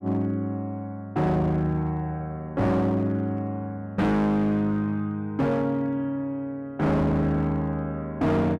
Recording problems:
distorted audio; hard clipping, signal-to-distortion ratio 7 dB

